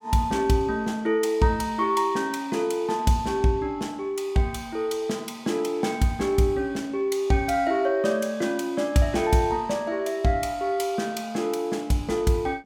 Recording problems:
none

